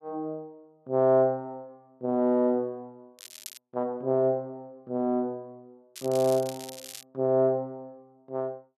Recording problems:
crackle; at 3 s and from 6 to 7 s; loose cable, SNR 15 dB

